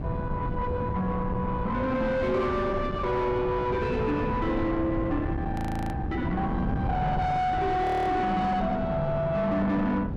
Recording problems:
distortion; soft clipping, signal-to-distortion ratio 7 dB
wind on the microphone; below 330 Hz, SNR 5 dB
frozen audio; at 5.5 s and at 8 s

